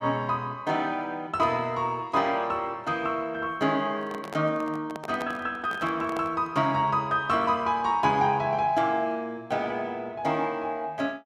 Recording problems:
microphone handling noise; from 4 to 6.5 s; peak -4 dB vs average level

